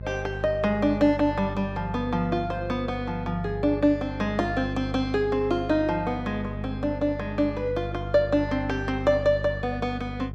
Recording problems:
mains hum; 50 Hz, harmonics up to 650 Hz, SNR 9 dB

